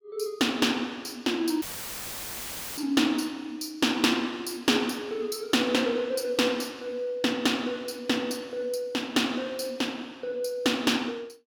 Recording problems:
audio cutting out; at 1.5 s for 1 s; filled with static

